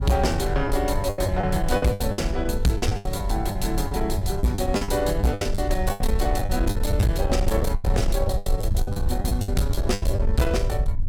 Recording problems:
distorted audio; soft clipping, signal-to-distortion ratio 11 dB
low-frequency rumble; below 92 Hz, SNR 7 dB
wind noise; below 78 Hz, SNR 4 dB
packet loss; 14% of the sound replaced, filled with the last packet

